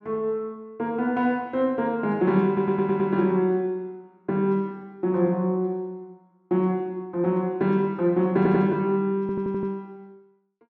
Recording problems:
stutter; at 2.5 s, at 8.5 s and at 9 s

